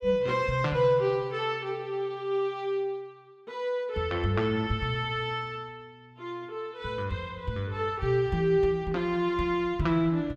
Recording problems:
none

